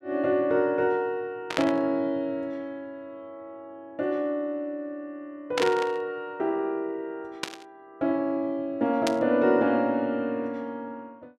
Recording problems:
burst of static; 4 times, first at 1.5 s; peak +3 dB vs average level

